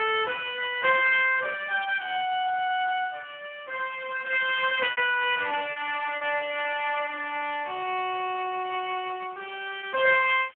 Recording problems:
phone line; 320 Hz to 3.2 kHz, Speex
background hiss; SNR 27 dB
lost packets; 3% of the sound replaced, filled with repeated pitch periods

